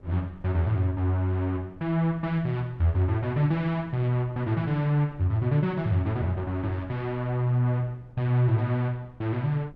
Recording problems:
wind on the microphone; below 240 Hz, SNR 25 dB

